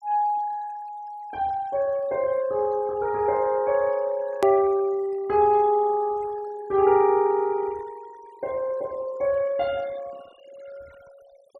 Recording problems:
denoising artefacts; signal-to-artefact ratio 26 dB
edit click; at 4.5 s

